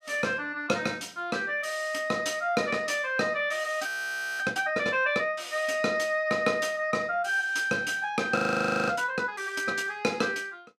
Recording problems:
audio freezing; at 4 s for 0.5 s and at 8.5 s for 0.5 s

